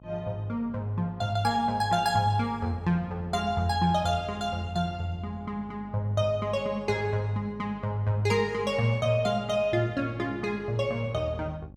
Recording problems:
electrical hum; 50 Hz, harmonics up to 850 Hz, SNR 20 dB

